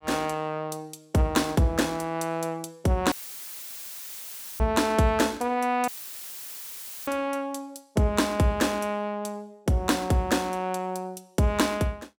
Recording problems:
dropout; at 3 s for 1.5 s and at 6 s for 1 s; filled with static

